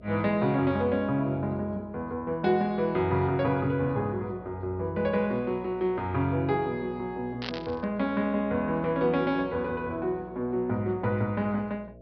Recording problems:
low-pass filter; nothing above 5.5 kHz
hum; 60 Hz, harmonics up to 660 Hz, SNR 22 dB
burst of static; at 7.5 s; peak -2 dB vs average level

